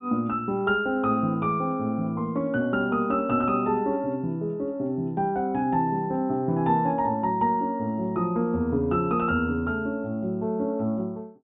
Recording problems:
low-pass filter; nothing above 4 kHz

